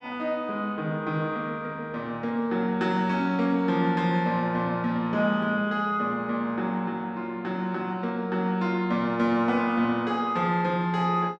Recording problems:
none

